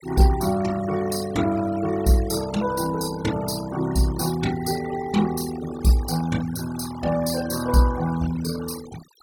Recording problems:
denoising artefacts; signal-to-artefact ratio 14 dB

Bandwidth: 17.5 kHz